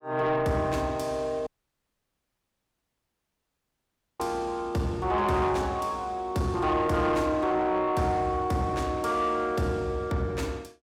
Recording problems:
distortion; soft clipping, signal-to-distortion ratio 12 dB
dropout; at 1.5 s for 2.5 s

